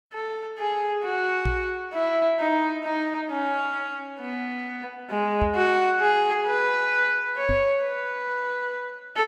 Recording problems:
microphone bump; at 1.5 s, at 5.5 s and at 7.5 s; peak +1 dB vs average level

